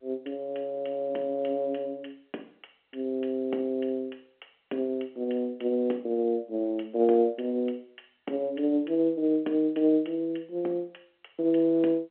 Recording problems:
telephone audio; 240 Hz to 3.6 kHz, G.711

